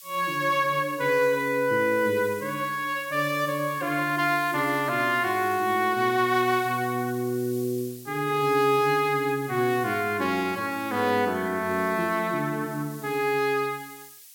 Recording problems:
hiss; SNR 19 dB

